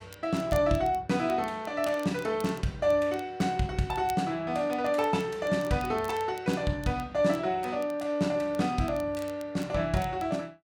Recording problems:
crackling; vinyl, SNR 23 dB

